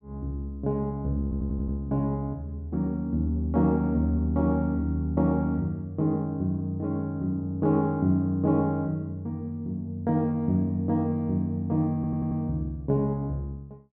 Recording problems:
stutter; at 1 s and at 12 s

